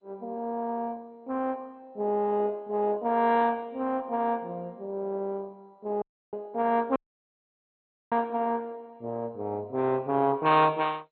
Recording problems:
lossy compression; MP2, then MP2, log-spectral distance 3 dB, nothing above 3.6 kHz
audio cutting out; at 6 s and at 7 s for 1 s

